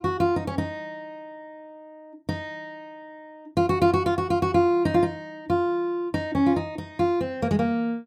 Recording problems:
none

